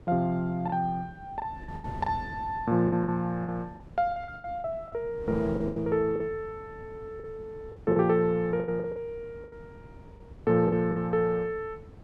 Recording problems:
wind noise; below 270 Hz, SNR 17 dB
packet loss; 11% of the sound replaced, filled with the last packet

